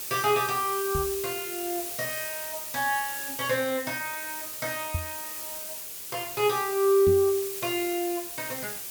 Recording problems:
background hiss; SNR 5 dB
microphone thump; at 1 s, at 5 s and at 7 s; peak +2 dB vs average level

